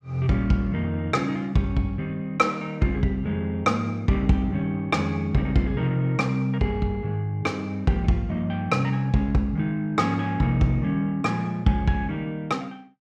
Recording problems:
none

